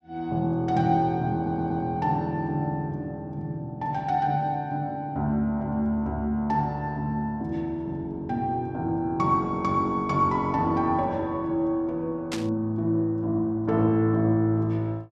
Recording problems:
audio stuttering; at 1.5 s
burst of static; at 12 s; peak -3 dB vs average level

